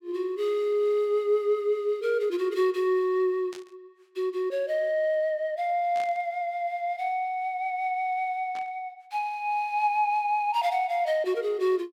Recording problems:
burst of static; at 3.5 s, at 6 s and at 8.5 s; peak -12 dB vs average level

